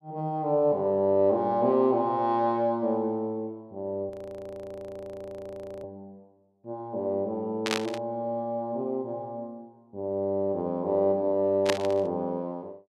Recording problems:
audio freezing; at 4 s for 1.5 s
burst of static; at 7.5 s and at 12 s; peak +4 dB vs average level

